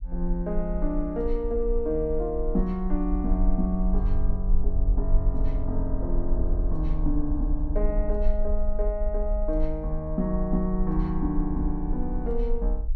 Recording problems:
low-frequency rumble; below 42 Hz, strongest tone 20 Hz, SNR 1 dB

